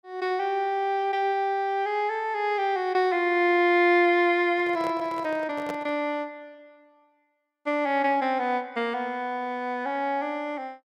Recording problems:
handling noise; from 4.5 to 6 s; peak -6 dB vs average level

